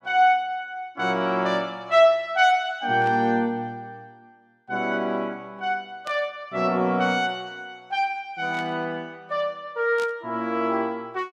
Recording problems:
burst of static; 4 times, first at 3 s; peak -11 dB vs average level

